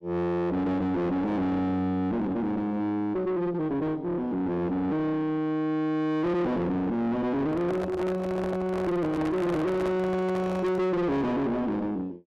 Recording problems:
distortion; soft clipping, signal-to-distortion ratio 6 dB
microphone handling noise; from 7.5 to 11 s; peak -1 dB vs average level

